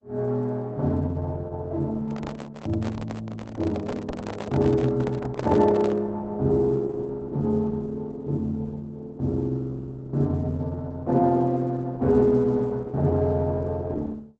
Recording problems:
lossy codec; Opus, log-spectral distance 2 dB, nothing above 7.8 kHz
handling noise; from 2 to 6 s; peak -4 dB vs average level

